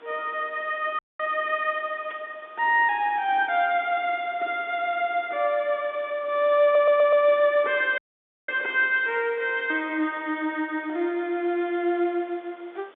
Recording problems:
phone line; 260 Hz to 3.6 kHz, G.711
background hiss; SNR 28 dB
dropout; at 1 s and at 8 s for 0.5 s
burst of static; at 2 s; peak -16 dB vs average level
audio stuttering; at 6.5 s

